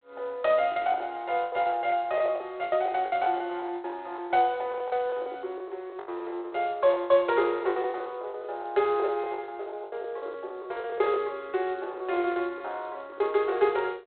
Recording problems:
phone line; 300 Hz to 3.8 kHz, G.726
packet loss; 17% of the sound replaced, filled with the last packet

